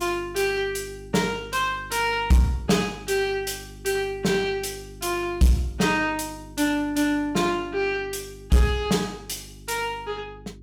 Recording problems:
distortion; soft clipping, signal-to-distortion ratio 10 dB
hum; 50 Hz, harmonics up to 400 Hz, SNR 19 dB

